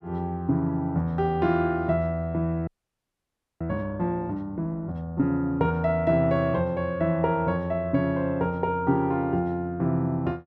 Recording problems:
frozen audio; at 2.5 s for 1 s

